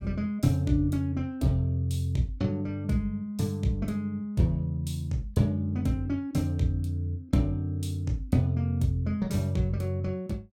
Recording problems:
none

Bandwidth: 17 kHz